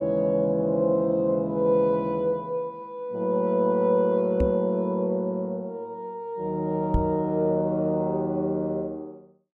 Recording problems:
knock on the microphone; at 4.5 s and at 7 s; peak +3 dB vs average level

